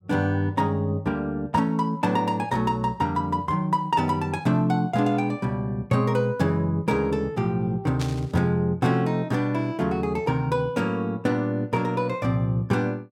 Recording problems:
burst of static; at 8 s; peak -6 dB vs average level

